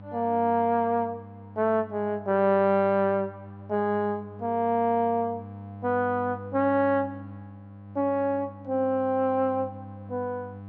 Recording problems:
hum; 50 Hz, harmonics up to 1 kHz, SNR 17 dB

